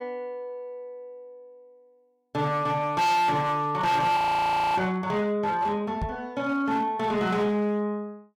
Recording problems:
distortion; hard clipping, signal-to-distortion ratio 8 dB
frozen audio; at 4 s for 0.5 s
knock on the microphone; at 6 s; peak -2 dB vs average level

